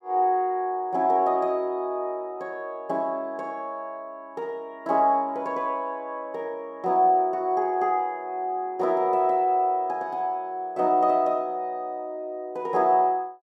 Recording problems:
none

